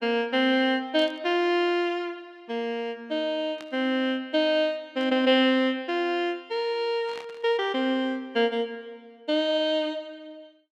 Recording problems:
static burst; 4 times, first at 1 s; peak -12 dB vs average level

